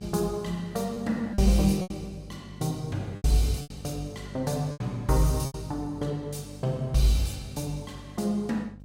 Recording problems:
electrical hum; 50 Hz, harmonics up to 600 Hz, SNR 16 dB
lost packets; 5% of the sound replaced, filled with repeated pitch periods

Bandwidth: 16 kHz